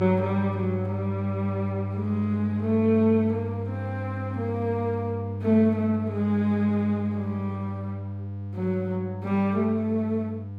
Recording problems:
hum; 50 Hz, harmonics up to 700 Hz, SNR 6 dB

